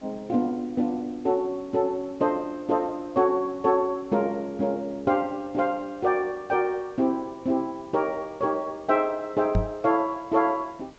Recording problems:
treble cut off; nothing above 8 kHz
background hiss; slope -4 dB per octave, SNR 27 dB
knock on the microphone; at 9.5 s; peak +5 dB vs average level

